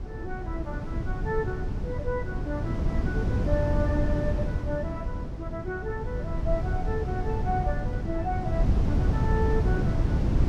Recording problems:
wind on the microphone; below 150 Hz, SNR -4 dB

